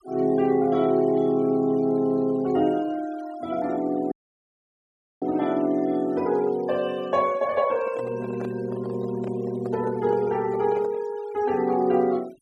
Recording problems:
denoising artefacts; signal-to-artefact ratio 23 dB
dropout; at 4 s for 1 s
handling noise; from 7.5 to 11 s; peak -9 dB vs average level

